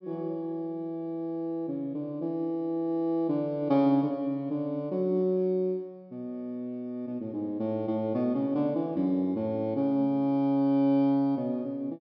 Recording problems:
treble cut off; nothing above 5.5 kHz

